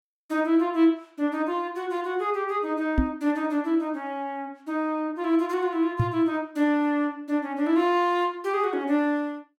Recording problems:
microphone bump; at 3 s and at 6 s; peak +6 dB vs average level

